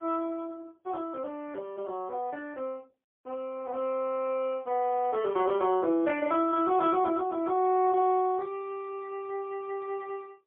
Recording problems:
telephone audio; 260 Hz to 3.3 kHz, AMR-NB, then MP3

